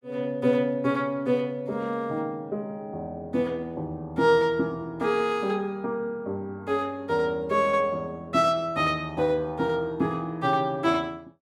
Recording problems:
none

